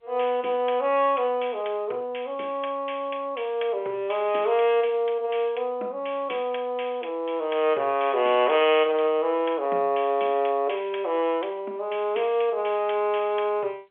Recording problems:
phone line; 340 Hz to 3.4 kHz, G.711

